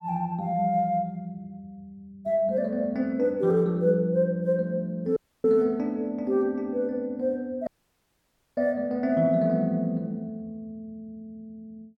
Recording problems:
audio cutting out; at 5 s and at 7.5 s for 1 s

